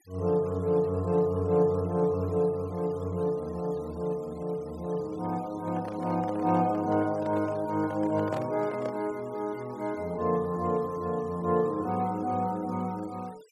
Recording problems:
noise reduction artefacts; signal-to-artefact ratio 24 dB
microphone handling noise; from 5.5 to 9 s; peak -3 dB vs average level

